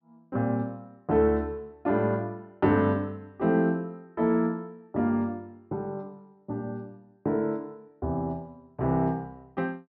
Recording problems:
treble missing; nothing above 5.4 kHz

